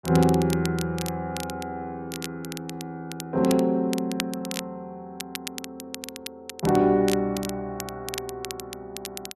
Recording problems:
crackle; vinyl, SNR 11 dB

